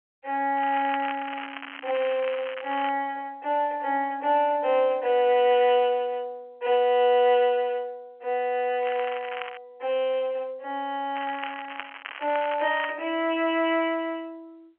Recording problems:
telephone audio; 300 Hz to 3.2 kHz, G.711
crackling; from 0.5 to 3 s, at 9 s and from 11 to 13 s; loose cable, SNR 13 dB

